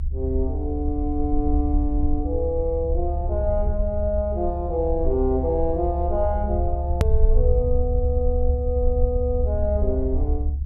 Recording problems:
rumble; below 72 Hz, SNR 0 dB
edit click; at 7 s

